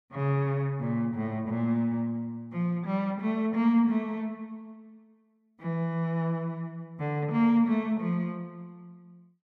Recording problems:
none

